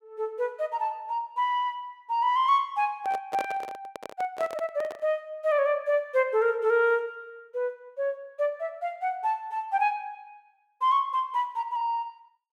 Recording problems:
handling noise; from 3 to 5 s; peak -3 dB vs average level

